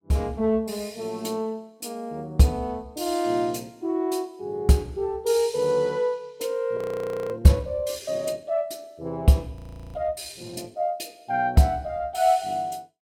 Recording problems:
frozen audio; at 7 s for 0.5 s and at 9.5 s

